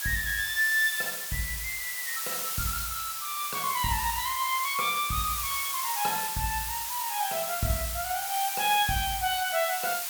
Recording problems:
background hiss; SNR 2 dB

